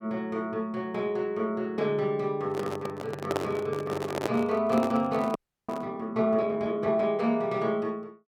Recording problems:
handling noise; from 2.5 to 6 s; peak +3 dB vs average level
frozen audio; at 5.5 s

